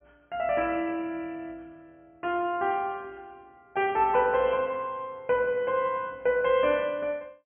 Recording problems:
low-pass filter; nothing above 3.3 kHz

